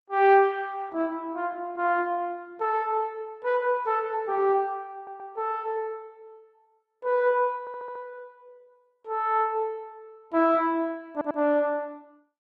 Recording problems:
lossy compression; Opus, log-spectral distance 2 dB
stutter; at 5 s, at 7.5 s and at 11 s

